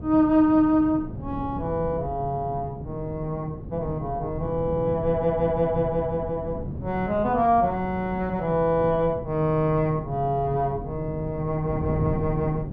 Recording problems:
wind noise; below 240 Hz, SNR 10 dB

